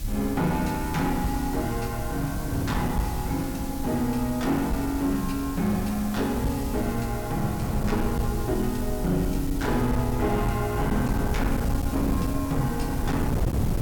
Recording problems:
distorted audio; hard clipping, uneven, signal-to-distortion ratio 12 dB
hum; 60 Hz, harmonics up to 600 Hz, SNR 19 dB
hiss; slope +3 dB per octave, SNR 14 dB
rumble; below 82 Hz, SNR 8 dB
wind on the microphone; below 260 Hz, SNR 5 dB

